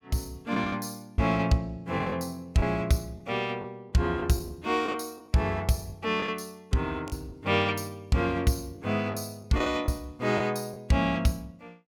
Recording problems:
lost packets; 5% of the sound replaced, filled with the last packet

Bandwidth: 18 kHz